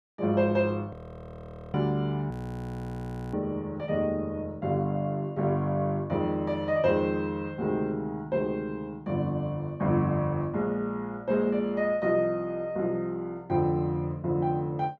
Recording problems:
audio freezing; at 1 s for 1 s and at 2.5 s for 1 s

